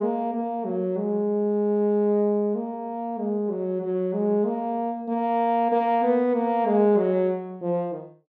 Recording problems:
none

